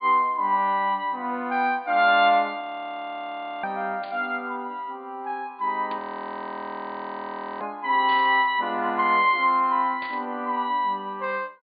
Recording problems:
treble cut off; nothing above 4.8 kHz
audio freezing; at 2.5 s for 1 s and at 6 s for 1.5 s
burst of static; 4 times, first at 4 s; peak -12 dB vs average level

